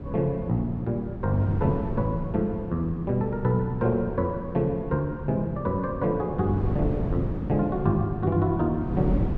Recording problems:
wind noise; below 240 Hz, SNR 7 dB

